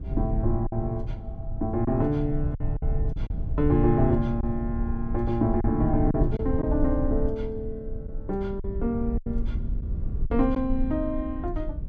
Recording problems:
low-frequency rumble; below 78 Hz, SNR 4 dB
lost packets; 4% of the sound replaced, filled with silence

